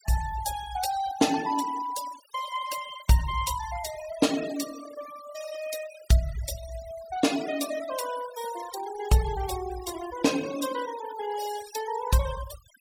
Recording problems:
denoising artefacts; signal-to-artefact ratio 12 dB

